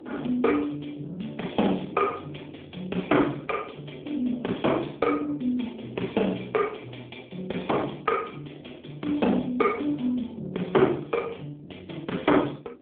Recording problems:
phone line; 220 Hz to 3.5 kHz, AMR-NB
wind on the microphone; below 460 Hz, SNR 21 dB

